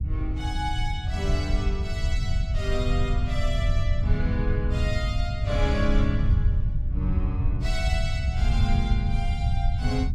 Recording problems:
low-frequency rumble; below 94 Hz, SNR -5 dB

